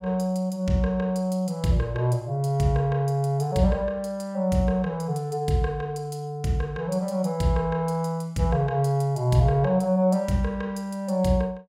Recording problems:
none

